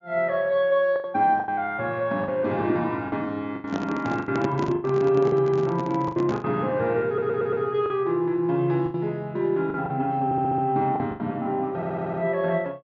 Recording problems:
treble cut off; nothing above 7.3 kHz
packet loss; 9% of the sound replaced, filled with the last packet
microphone handling noise; from 3.5 to 6.5 s; peak 0 dB vs average level
audio stuttering; at 7 s, at 10 s and at 12 s

